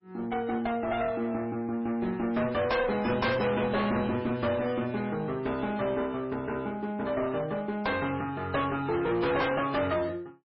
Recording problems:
lossy compression; MP3, log-spectral distance 3 dB, nothing above 5.5 kHz
distortion; hard clipping, uneven, signal-to-distortion ratio 6 dB

